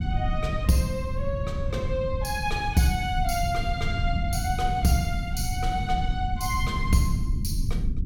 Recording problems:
rumble; below 120 Hz, SNR 2 dB

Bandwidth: 17.5 kHz